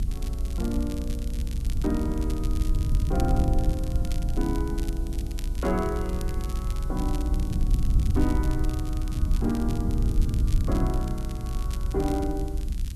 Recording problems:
hiss; slope +1 dB per octave, SNR 22 dB
rumble; below 80 Hz, SNR -3 dB
crackle; vinyl, SNR 14 dB

